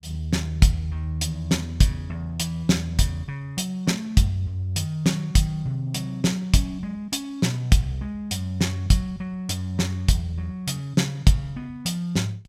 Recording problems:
none

